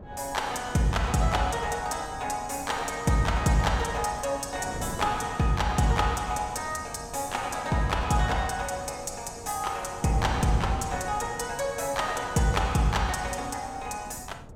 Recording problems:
wind on the microphone; below 390 Hz, SNR 15 dB

